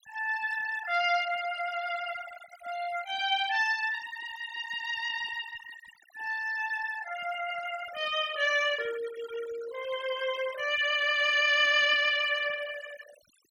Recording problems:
noise reduction artefacts; signal-to-artefact ratio 14 dB

